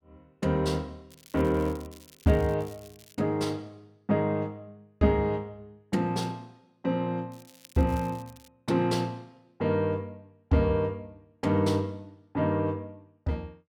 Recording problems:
crackling; from 1 to 3 s and from 7.5 to 8.5 s; loose cable, SNR 24 dB

